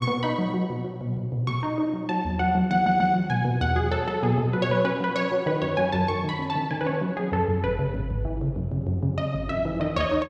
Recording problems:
audio stuttering; at 2.5 s

